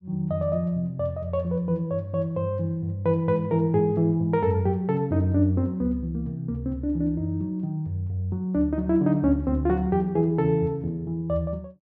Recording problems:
none

